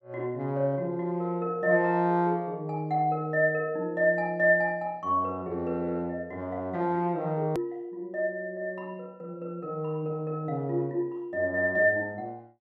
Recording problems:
edit click; at 7.5 s

